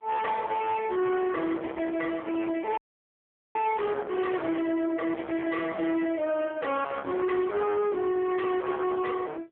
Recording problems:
phone line; 280 Hz to 3.3 kHz, AMR-NB
distorted audio; soft clipping, signal-to-distortion ratio 6 dB
audio freezing; at 3 s for 1 s

